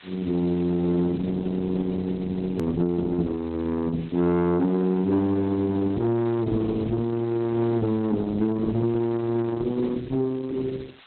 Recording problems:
codec artefacts; Opus, log-spectral distance 6 dB, nothing above 13.1 kHz
distorted audio; soft clipping, signal-to-distortion ratio 11 dB
background hiss; SNR 25 dB
click at an edit; at 2.5 s

